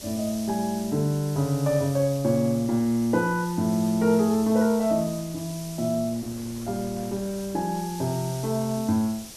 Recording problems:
hiss; SNR 15 dB
wind noise; below 770 Hz, SNR 24 dB

